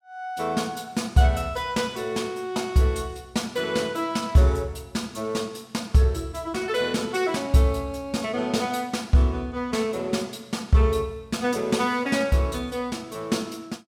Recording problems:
none

